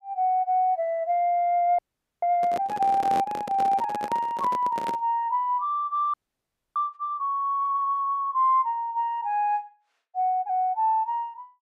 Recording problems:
frozen audio; at 2 s and at 6 s for 0.5 s
microphone handling noise; from 2.5 to 5 s; peak -3 dB vs average level

